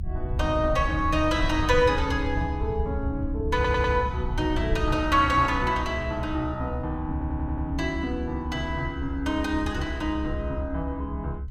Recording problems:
low-frequency rumble; below 80 Hz, SNR 5 dB
stutter; at 3.5 s and at 7 s

